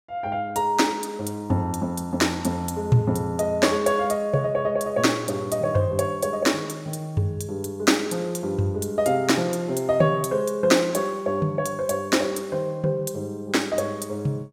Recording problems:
none

